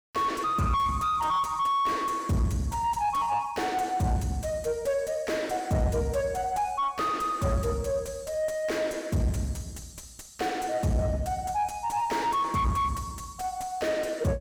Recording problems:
distortion; soft clipping, signal-to-distortion ratio 6 dB

